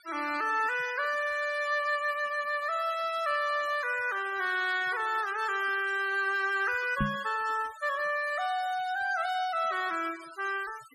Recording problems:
noise reduction artefacts; signal-to-artefact ratio 17 dB
knock on the microphone; at 7 s; peak +3 dB vs average level

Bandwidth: 13.5 kHz